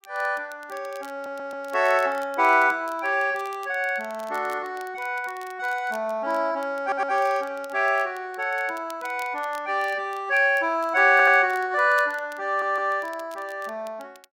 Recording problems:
crackle; vinyl, SNR 26 dB
stutter; 4 times, first at 1 s

